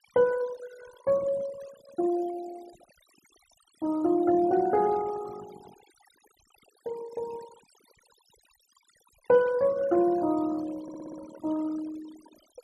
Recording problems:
noise reduction artefacts; signal-to-artefact ratio 20 dB
stutter; at 11 s

